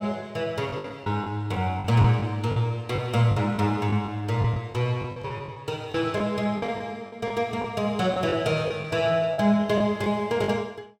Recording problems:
packet loss; 9% of the sound replaced, filled with the last packet

